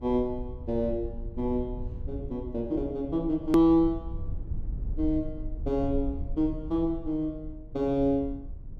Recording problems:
low-frequency rumble; below 74 Hz, SNR 11 dB
edit click; at 3.5 s

